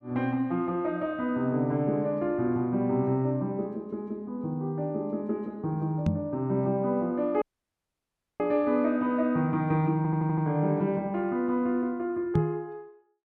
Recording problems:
microphone bump; at 6 s and at 12 s; peak +6 dB vs average level
audio cutting out; at 7.5 s for 1 s
audio stuttering; at 10 s

